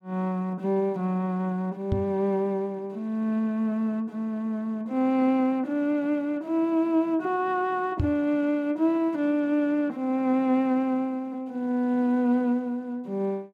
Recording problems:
knock on the microphone; at 2 s and at 8 s; peak +3 dB vs average level

